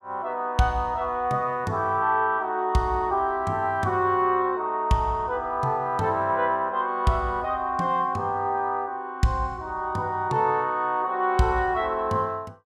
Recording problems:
none

